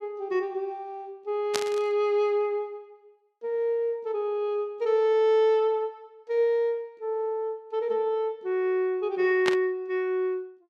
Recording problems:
burst of static; at 1.5 s and at 9.5 s; peak +3 dB vs average level

